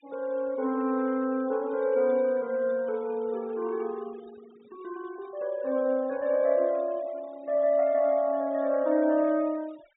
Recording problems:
low-pass filter; nothing above 4 kHz
noise reduction artefacts; signal-to-artefact ratio 26 dB

